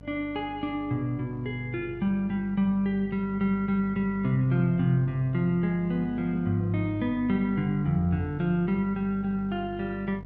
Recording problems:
electrical hum; 50 Hz, harmonics up to 950 Hz, SNR 16 dB

